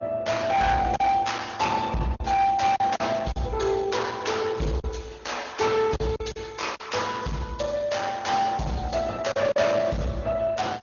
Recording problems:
low-pass filter; nothing above 6.7 kHz
codec artefacts; AAC, then Opus, log-spectral distance 4 dB
distortion; hard clipping, signal-to-distortion ratio 11 dB
lost packets; 4% of the sound replaced, filled with silence

